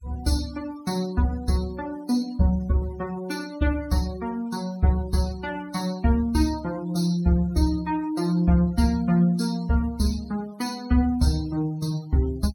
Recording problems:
denoising artefacts; signal-to-artefact ratio 22 dB

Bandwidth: 17 kHz